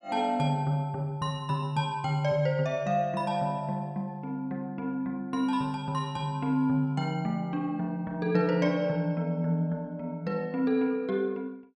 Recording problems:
none

